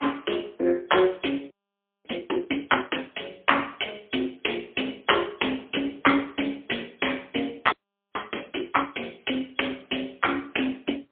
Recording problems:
phone line; 300 Hz to 3.4 kHz, AMR-NB, then MP3
frozen audio; at 1.5 s for 0.5 s and at 7.5 s

